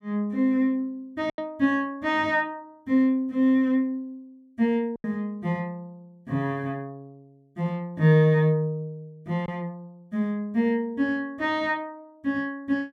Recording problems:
lost packets; 1.6% of the sound replaced, filled with silence

